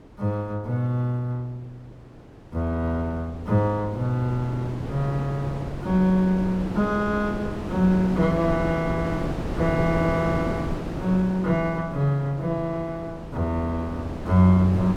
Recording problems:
wind noise; below 460 Hz, SNR 8 dB

